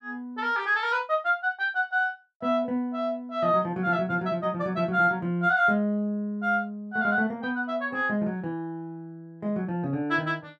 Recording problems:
none

